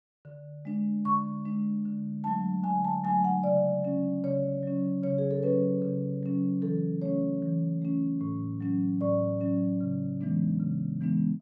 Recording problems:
none

